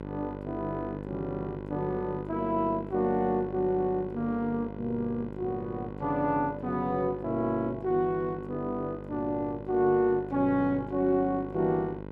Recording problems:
hum; 50 Hz, harmonics up to 2 kHz, SNR 11 dB

